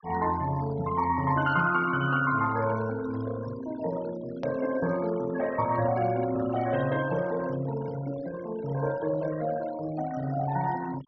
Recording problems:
treble cut off; nothing above 6 kHz
denoising artefacts; signal-to-artefact ratio 16 dB
click at an edit; at 4.5 s

